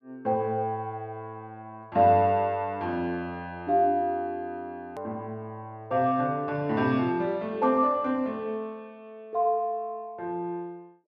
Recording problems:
edit click; at 5 s

